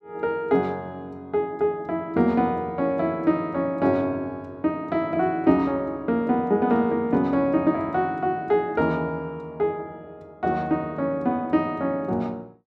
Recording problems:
none

